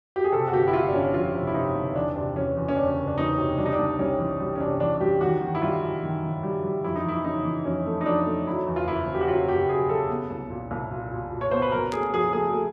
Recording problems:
burst of static; at 12 s; peak -9 dB vs average level

